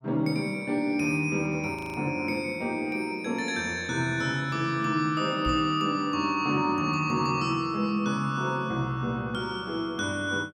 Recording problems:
frozen audio; at 2 s
microphone bump; at 5.5 s; peak -2 dB vs average level

